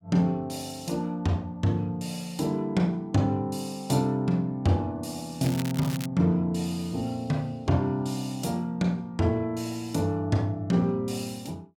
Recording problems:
crackle; at 5.5 s; loose cable, SNR 13 dB

